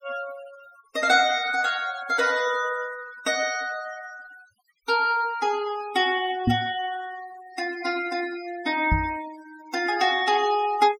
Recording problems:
noise reduction artefacts; signal-to-artefact ratio 16 dB
microphone thump; at 6.5 s and at 9 s; peak +6 dB vs average level

